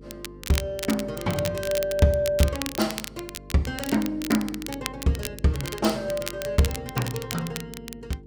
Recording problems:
hum; 50 Hz, harmonics up to 450 Hz, SNR 18 dB
crackling; vinyl, SNR 9 dB

